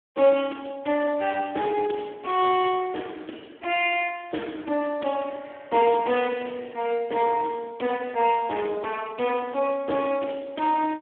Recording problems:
phone line; 220 Hz to 3.4 kHz, Speex

